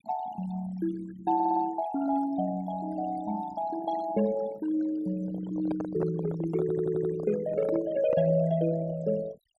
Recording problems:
noise reduction artefacts; signal-to-artefact ratio 17 dB
stutter; at 1.5 s and at 6.5 s
handling noise; from 5 to 8.5 s; peak -2 dB vs average level

